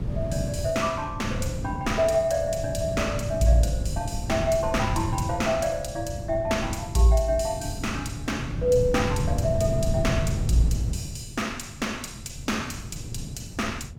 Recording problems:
wind noise; below 160 Hz, SNR 5 dB

